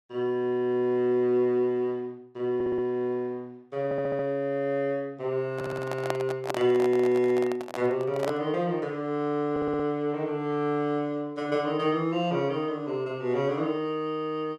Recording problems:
audio stuttering; 4 times, first at 2.5 s
handling noise; from 5.5 to 8.5 s; peak +2 dB vs average level

